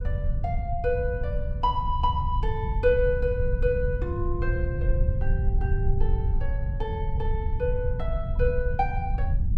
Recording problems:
rumble; below 86 Hz, SNR -1 dB

